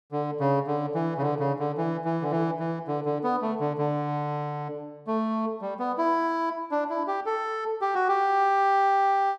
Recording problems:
none

